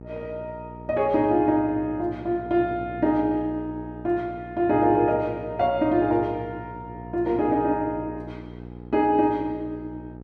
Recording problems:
mains hum; 60 Hz, harmonics up to 960 Hz, SNR 16 dB

